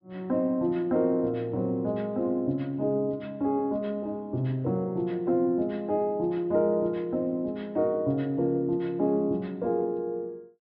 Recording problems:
low-pass filter; nothing above 5.5 kHz

